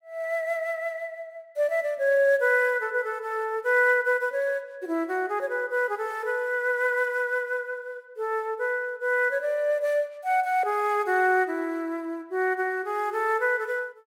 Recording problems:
none

